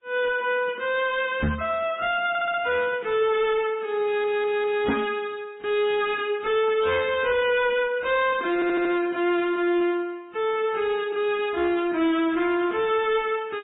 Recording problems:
low-pass filter; nothing above 3.5 kHz
lossy codec; AAC, then MP3, log-spectral distance 2 dB
distortion; hard clipping, signal-to-distortion ratio 10 dB
microphone bump; at 1.5 s and at 5 s; peak +3 dB vs average level
stutter; at 2.5 s, at 4 s and at 8.5 s

